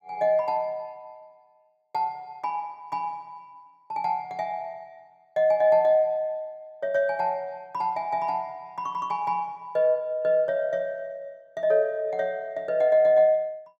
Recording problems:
none

